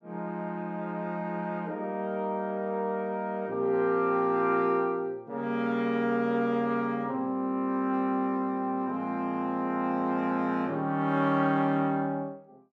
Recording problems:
none

